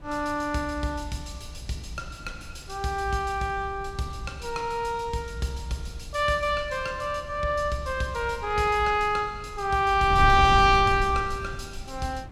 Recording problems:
wind noise; below 120 Hz, SNR 12 dB

